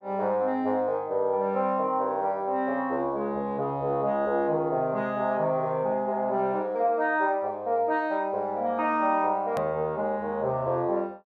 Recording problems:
hard cut with a click; at 9.5 s

